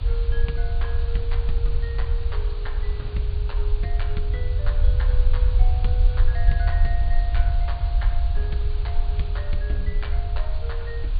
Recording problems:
treble cut off; nothing above 4.7 kHz
hiss; SNR 10 dB
low-frequency rumble; below 62 Hz, SNR -11 dB

